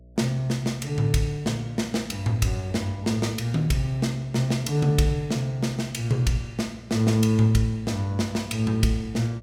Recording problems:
hum; 60 Hz, harmonics up to 660 Hz, SNR 25 dB

